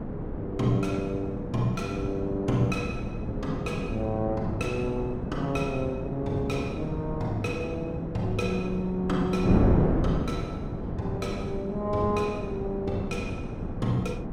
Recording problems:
wind noise; below 340 Hz, SNR 2 dB

